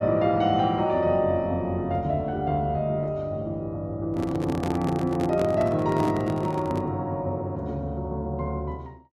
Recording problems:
handling noise; from 4 to 7 s; peak -1 dB vs average level

